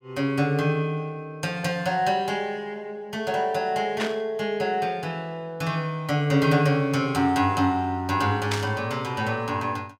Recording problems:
burst of static; at 4 s and at 8.5 s; peak 0 dB vs average level

